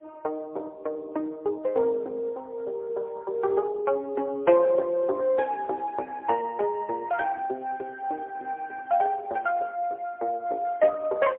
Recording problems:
phone line; 320 Hz to 3.1 kHz, AMR-NB, then MP3

